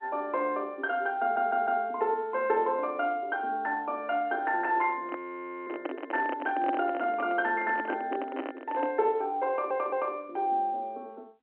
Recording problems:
telephone audio; 240 Hz to 3.1 kHz, G.711
stutter; at 1 s and at 9.5 s
microphone handling noise; from 5 to 9 s; peak 0 dB vs average level
audio freezing; at 5 s for 0.5 s

